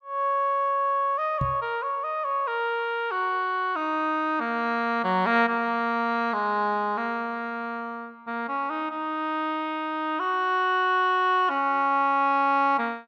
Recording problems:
microphone bump; at 1.5 s; peak 0 dB vs average level

